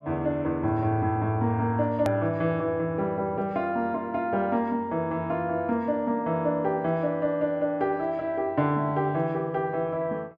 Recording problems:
edit click; at 2 s

